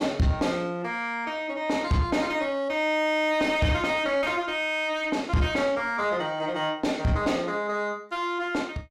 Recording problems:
distorted audio; soft clipping, signal-to-distortion ratio 11 dB

